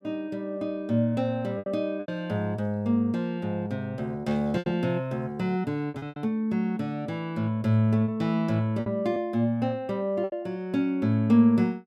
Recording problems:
lost packets; 5% of the sound replaced, filled with repeated pitch periods

